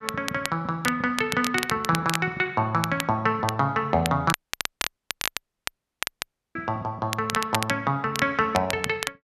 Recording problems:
crackling; vinyl, SNR 7 dB
dropout; at 4.5 s for 2 s

